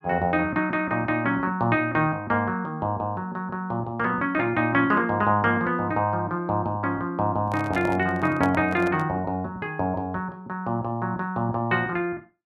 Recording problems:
handling noise; from 7.5 to 9 s; peak -1 dB vs average level

